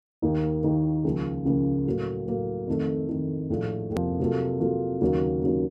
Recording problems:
click at an edit; at 4 s

